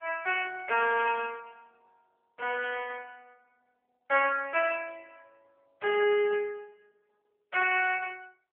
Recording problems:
telephone audio; 370 Hz to 3.1 kHz, AMR-NB

